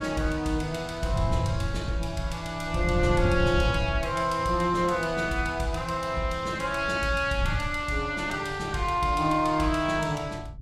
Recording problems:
wind on the microphone; below 120 Hz, SNR 8 dB

